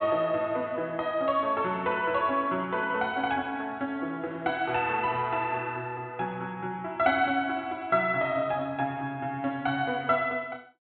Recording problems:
low-pass filter; nothing above 4 kHz

